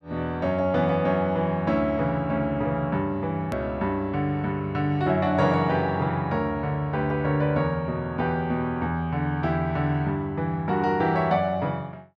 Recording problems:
click at an edit; at 3.5 s

